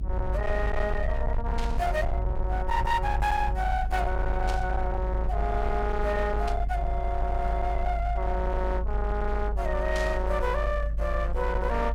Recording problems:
distortion; hard clipping, signal-to-distortion ratio 11 dB
rumble; below 54 Hz, strongest tone 50 Hz, SNR 1 dB
burst of static; 4 times, first at 1.5 s; peak -4 dB vs average level

